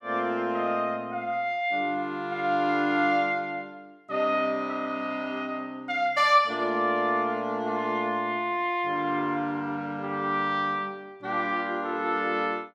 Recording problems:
none

